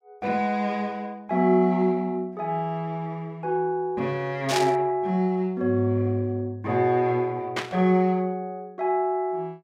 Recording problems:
static burst; at 4.5 s and at 7.5 s; peak +2 dB vs average level

